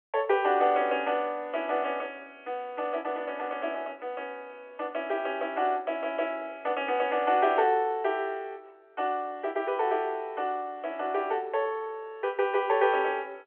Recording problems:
phone line; 340 Hz to 3.4 kHz, G.711

